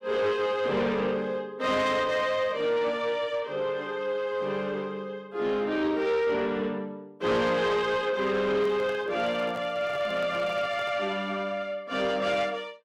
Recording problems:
distortion; soft clipping, signal-to-distortion ratio 12 dB
handling noise; from 8.5 to 11 s; peak -8 dB vs average level

